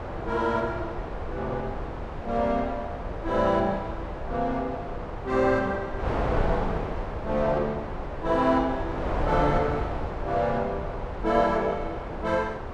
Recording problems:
wind noise; below 740 Hz, SNR 6 dB

